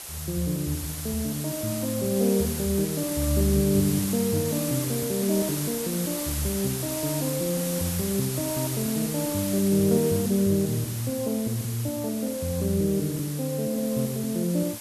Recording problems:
hiss; slope -1 dB per octave, SNR 6 dB

